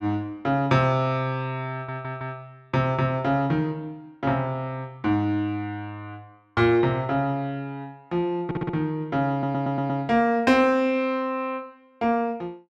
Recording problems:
audio stuttering; at 1.5 s, at 8.5 s and at 9.5 s

